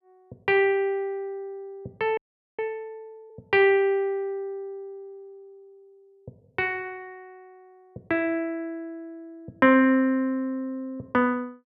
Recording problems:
audio freezing; at 2 s

